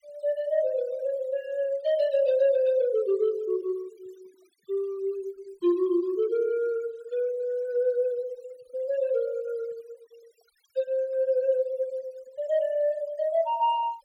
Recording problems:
noise reduction artefacts; signal-to-artefact ratio 27 dB

